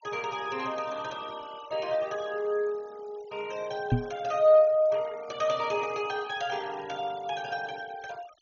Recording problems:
treble missing; nothing above 7 kHz
noise reduction artefacts; signal-to-artefact ratio 21 dB
microphone thump; at 4 s; peak +7 dB vs average level

